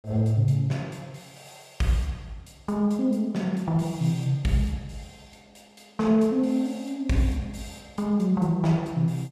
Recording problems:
none

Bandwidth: 14.5 kHz